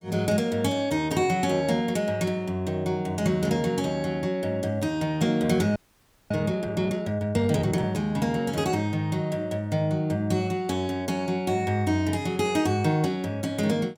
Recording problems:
audio freezing; at 6 s for 0.5 s

